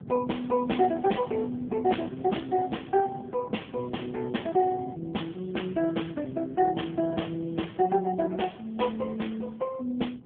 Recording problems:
phone line; 170 Hz to 3.4 kHz, AMR-NB
wind noise; below 290 Hz, SNR 15 dB

